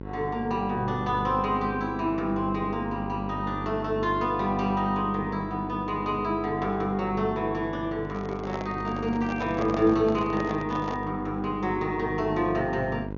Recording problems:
treble missing; nothing above 6.9 kHz
electrical hum; 50 Hz, harmonics up to 1.1 kHz, SNR 9 dB
handling noise; from 8 to 11 s; peak -2 dB vs average level

